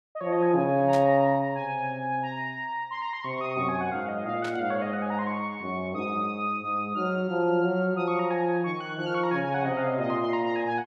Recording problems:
burst of static; at 1 s and at 4.5 s; peak -8 dB vs average level

